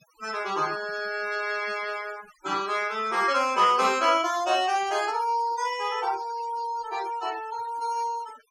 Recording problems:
denoising artefacts; signal-to-artefact ratio 17 dB

